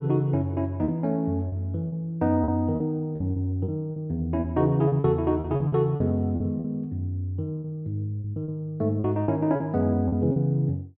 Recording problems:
lost packets; 10% of the sound replaced, filled with repeated pitch periods

